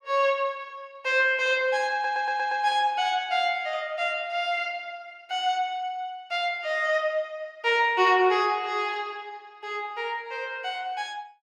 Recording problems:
audio stuttering; at 2 s

